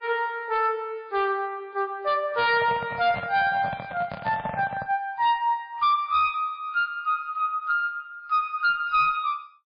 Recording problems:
codec artefacts; MP3, log-spectral distance 2 dB, nothing above 4.2 kHz
distortion; hard clipping, signal-to-distortion ratio 11 dB
microphone handling noise; from 2.5 to 5 s; peak -4 dB vs average level

